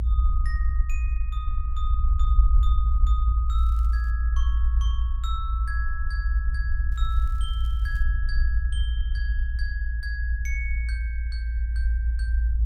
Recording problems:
rumble; below 58 Hz, strongest tone 56 Hz, SNR -12 dB
crackling; at 3.5 s and from 7 to 8 s; loose cable, SNR 22 dB

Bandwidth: 16 kHz